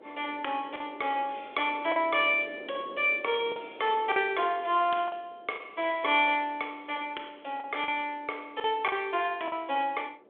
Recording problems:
phone line; 340 Hz to 3.5 kHz, G.726
wind noise; below 570 Hz, SNR 22 dB
lost packets; 4% of the sound replaced, filled with the last packet

